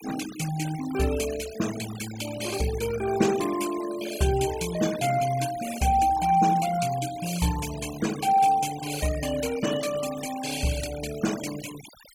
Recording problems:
denoising artefacts; signal-to-artefact ratio 12 dB

